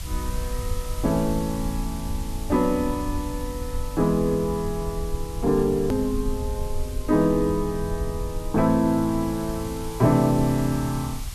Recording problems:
hiss; slope 0 dB per octave, SNR 17 dB
rumble; below 76 Hz, SNR 10 dB
edit click; at 6 s

